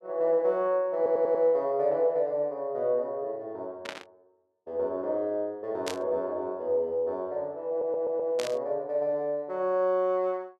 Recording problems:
stutter; at 1 s and at 7.5 s
static burst; at 4 s, at 6 s and at 8.5 s; peak -2 dB vs average level

